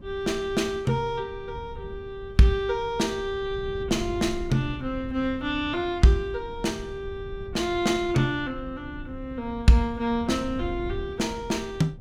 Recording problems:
wind on the microphone; below 120 Hz, SNR 14 dB

